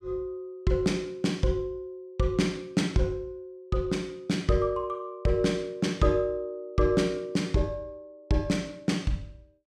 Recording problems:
none

